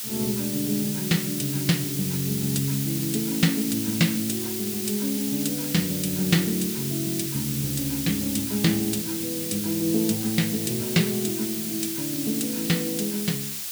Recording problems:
hiss; SNR 3 dB

